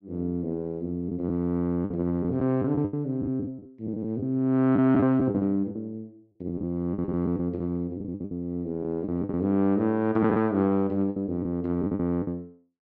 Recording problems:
lost packets; 10% of the sound replaced, filled with the last packet

